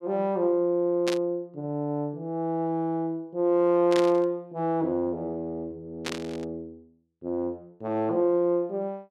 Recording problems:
static burst; at 1 s, at 4 s and at 6 s; peak -1 dB vs average level

